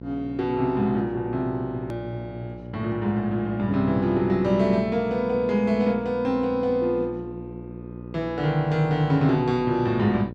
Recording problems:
electrical hum; 60 Hz, harmonics up to 660 Hz, SNR 14 dB
edit click; at 2 s

